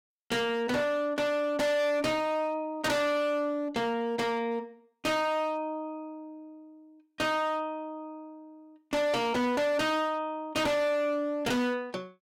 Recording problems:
distorted audio; hard clipping, uneven, signal-to-distortion ratio 6 dB

